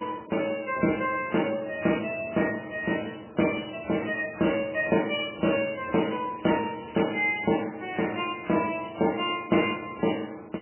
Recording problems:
codec artefacts; MP3, log-spectral distance 11 dB, nothing above 2.5 kHz
crackle; from 6 to 9.5 s; loose cable, SNR 27 dB

